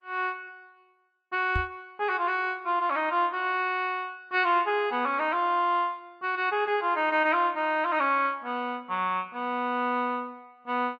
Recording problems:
lossy compression; Opus, log-spectral distance 2 dB
microphone thump; at 1.5 s; peak 0 dB vs average level

